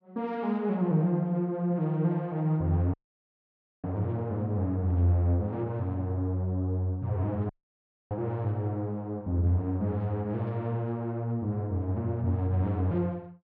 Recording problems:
audio cutting out; at 3 s for 1 s and at 7.5 s for 0.5 s

